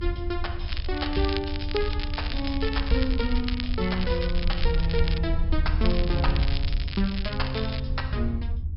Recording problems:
treble cut off; nothing above 5.3 kHz
mains hum; 50 Hz, harmonics up to 600 Hz, SNR 20 dB
low-frequency rumble; below 78 Hz, SNR 0 dB
crackling; from 0.5 to 5 s and from 6 to 8 s; loose cable, SNR 7 dB

